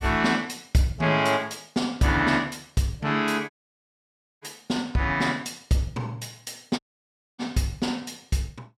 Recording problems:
audio cutting out; at 3.5 s for 1 s and at 7 s for 0.5 s

